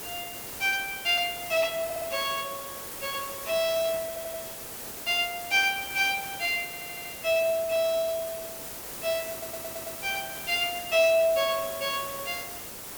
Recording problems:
hiss; slope -3 dB per octave, SNR 9 dB
audio stuttering; 4 times, first at 2 s

